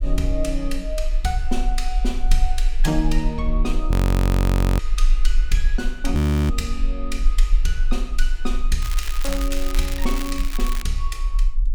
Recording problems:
low-frequency rumble; below 46 Hz, SNR -4 dB
audio freezing; at 4 s for 1 s and at 6 s
crackle; from 9 to 11 s; loose cable, SNR 6 dB

